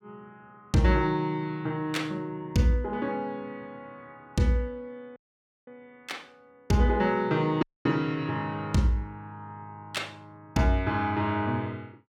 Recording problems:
audio cutting out; at 5 s for 0.5 s and at 7.5 s

